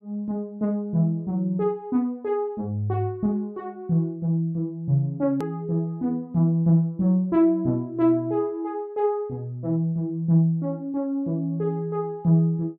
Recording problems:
edit click; at 5.5 s

